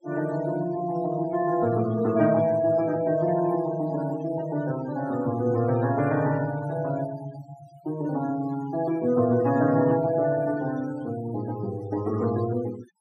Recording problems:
denoising artefacts; signal-to-artefact ratio 17 dB

